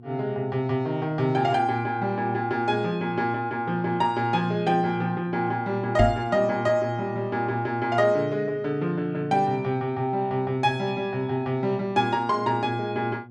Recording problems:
hum; 60 Hz, harmonics up to 720 Hz, SNR 18 dB
microphone bump; at 6 s; peak +6 dB vs average level

